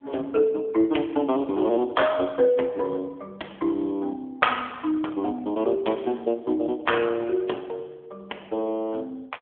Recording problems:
telephone audio; 280 Hz to 3.4 kHz, AMR-NB

